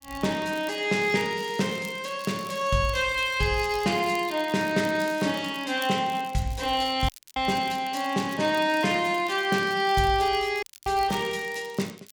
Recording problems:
crackle; vinyl, SNR 21 dB
dropout; at 7 s and at 11 s

